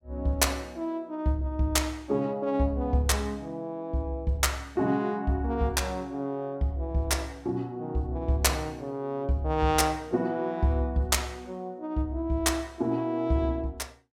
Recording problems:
none

